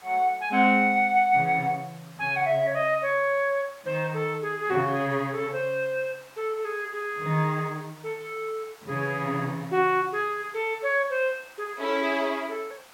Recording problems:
background hiss; SNR 24 dB

